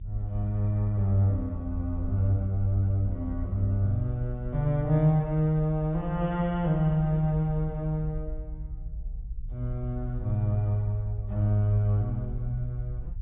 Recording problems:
treble missing; nothing above 3.7 kHz
rumble; below 60 Hz, SNR 11 dB

